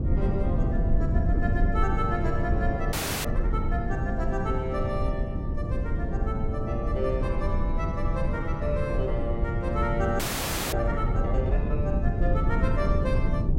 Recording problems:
low-frequency rumble; below 130 Hz, SNR -4 dB
frozen audio; at 3 s and at 10 s for 0.5 s

